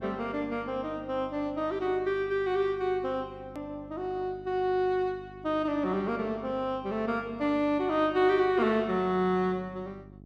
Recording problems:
hum; 50 Hz, harmonics up to 750 Hz, SNR 21 dB
edit click; at 3.5 s

